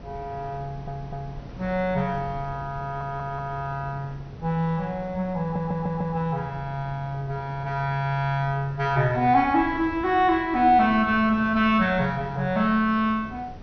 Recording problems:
treble missing; nothing above 6.1 kHz
wind on the microphone; below 320 Hz, SNR 18 dB
stutter; at 0.5 s, at 3 s and at 5.5 s

